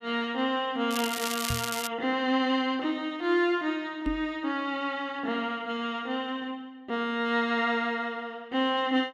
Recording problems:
crackling; at 1 s; loose cable, SNR 5 dB
microphone thump; at 1.5 s and at 4 s; peak 0 dB vs average level

